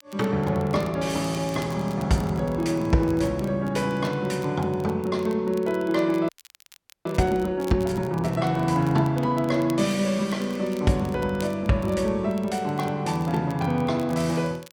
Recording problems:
crackling; vinyl, SNR 24 dB
audio freezing; at 6.5 s for 1 s

